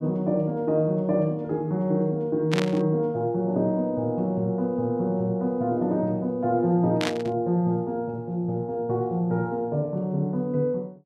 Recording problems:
burst of static; at 2.5 s and at 7 s; peak 0 dB vs average level

